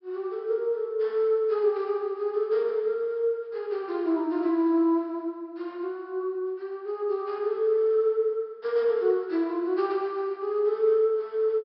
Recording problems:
low-pass filter; nothing above 5.4 kHz

